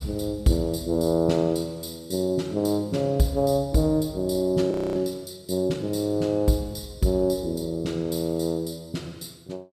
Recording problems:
audio freezing; at 4.5 s

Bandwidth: 14.5 kHz